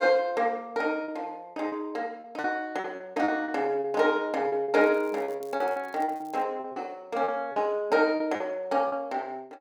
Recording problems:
lost packets; 11% of the sound replaced, filled with repeated pitch periods
crackling; from 5 to 6.5 s; loose cable, SNR 28 dB

